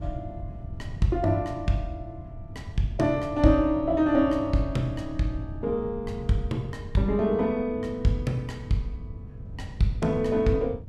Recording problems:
wind noise; below 130 Hz, SNR 13 dB

